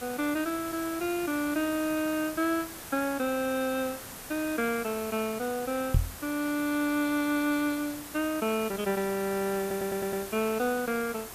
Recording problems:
hiss; slope -3 dB per octave, SNR 11 dB
microphone thump; at 6 s; peak +8 dB vs average level
stutter; at 9.5 s

